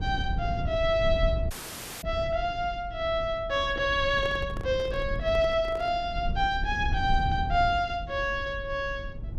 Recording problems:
rumble; below 98 Hz, SNR 8 dB
dropout; at 1.5 s for 0.5 s
handling noise; from 4 to 6 s; peak -9 dB vs average level

